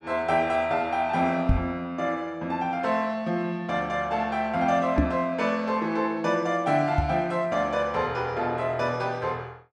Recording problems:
microphone thump; at 1.5 s, at 5 s and at 7 s; peak +6 dB vs average level

